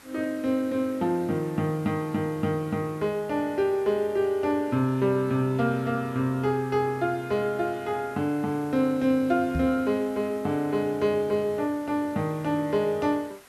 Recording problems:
hiss; SNR 24 dB
microphone thump; at 9.5 s; peak 0 dB vs average level

